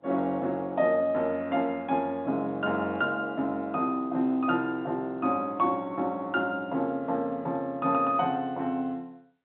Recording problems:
telephone audio; 190 Hz to 3.8 kHz, G.711

